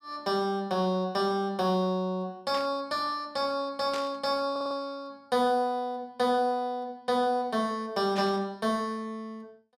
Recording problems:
burst of static; at 2.5 s, at 4 s and at 8 s; peak -5 dB vs average level
stutter; at 4.5 s

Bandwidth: 14.5 kHz